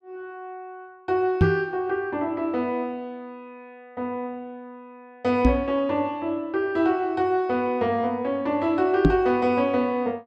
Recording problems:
microphone thump; at 1.5 s, at 5.5 s and at 9 s; peak +9 dB vs average level

